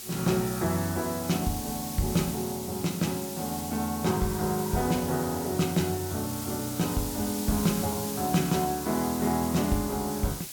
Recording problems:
background hiss; SNR 7 dB

